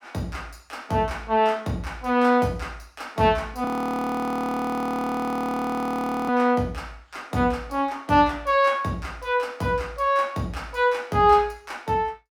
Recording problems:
frozen audio; at 3.5 s for 2.5 s

